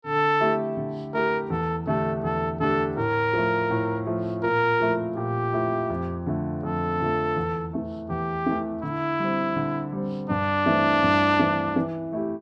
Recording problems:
none

